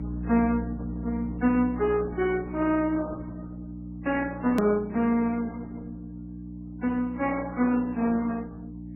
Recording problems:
lossy codec; Opus, then MP3, log-spectral distance 3 dB, nothing above 18.9 kHz
mains hum; 60 Hz, harmonics up to 300 Hz, SNR 9 dB
hard cut with a click; at 4.5 s

